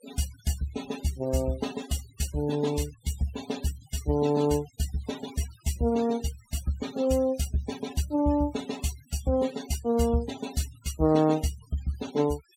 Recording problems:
noise reduction artefacts; signal-to-artefact ratio 17 dB

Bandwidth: 16.5 kHz